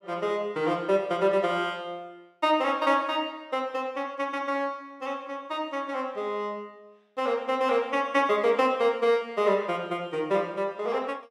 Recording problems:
none

